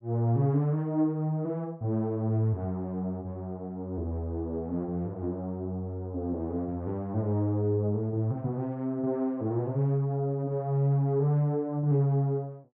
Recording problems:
none

